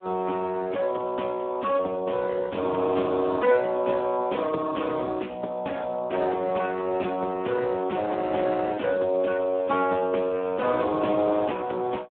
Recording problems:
telephone audio; 220 Hz to 2.6 kHz, Speex

